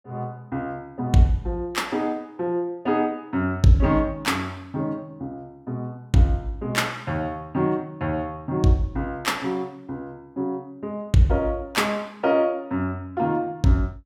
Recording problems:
none

